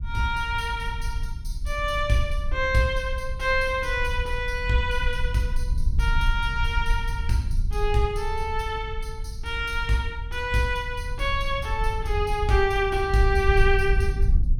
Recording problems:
rumble; below 64 Hz, SNR 4 dB

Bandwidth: 17 kHz